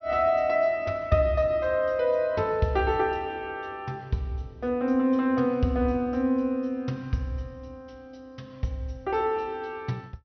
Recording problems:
treble missing; nothing above 6 kHz

